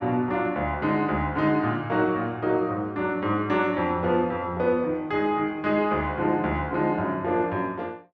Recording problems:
none

